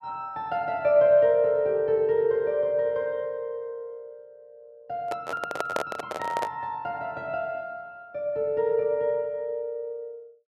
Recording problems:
handling noise; from 5 to 6.5 s; peak +2 dB vs average level

